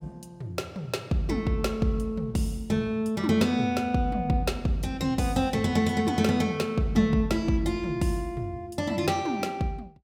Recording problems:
none

